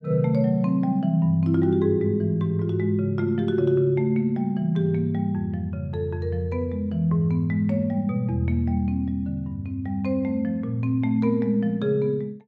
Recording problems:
none

